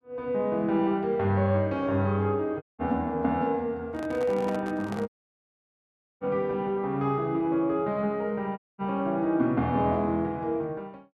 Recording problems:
audio cutting out; at 2.5 s, at 5 s for 1 s and at 8.5 s
handling noise; from 4 to 5 s; peak -7 dB vs average level

